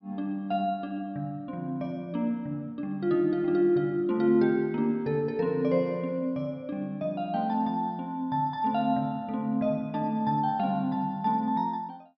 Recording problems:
treble missing; nothing above 5.5 kHz

